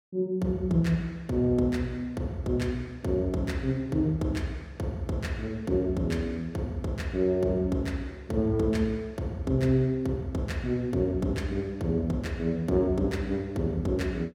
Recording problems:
none

